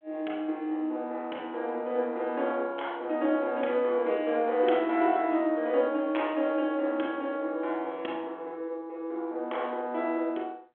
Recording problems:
phone line; 260 Hz to 3.7 kHz, G.726

